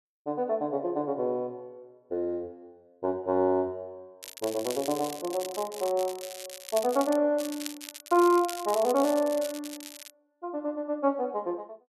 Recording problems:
crackling; from 4 to 7 s and from 7.5 to 10 s; loose cable, SNR 12 dB

